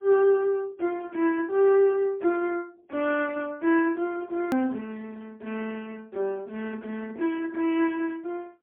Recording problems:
phone line; 240 Hz to 3.2 kHz, AMR-NB, then MP3
hard cut with a click; at 4.5 s

